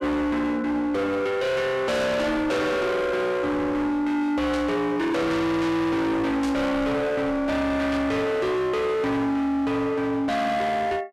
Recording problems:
distorted audio; hard clipping, signal-to-distortion ratio 6 dB
static burst; at 4.5 s, at 6.5 s and at 8 s; peak -9 dB vs average level

